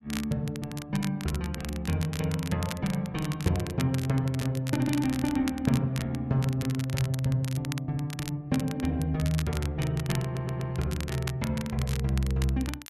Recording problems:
crackling; vinyl, SNR 12 dB
stutter; at 10 s

